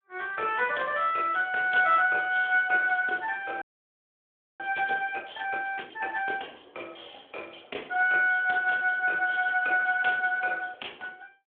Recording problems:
telephone audio; 280 Hz to 3.4 kHz, Speex
audio freezing; at 3.5 s for 1 s

